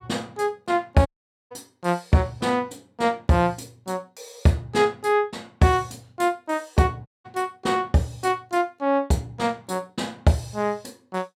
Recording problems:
audio cutting out; at 1 s and at 7 s

